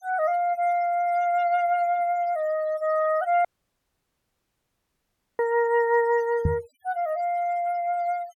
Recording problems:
denoising artefacts; signal-to-artefact ratio 25 dB
audio cutting out; at 3.5 s for 2 s
knock on the microphone; at 6.5 s; peak +4 dB vs average level

